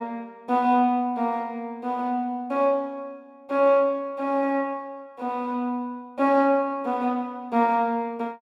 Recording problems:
none

